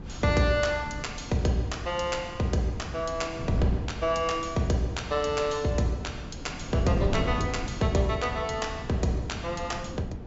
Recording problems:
treble cut off; nothing above 8 kHz
wind on the microphone; below 260 Hz, SNR 9 dB

